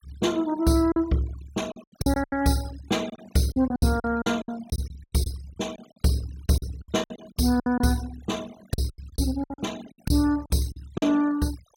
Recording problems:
noise reduction artefacts; signal-to-artefact ratio 21 dB
packet loss; 13% of the sound replaced, filled with silence

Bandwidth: 17 kHz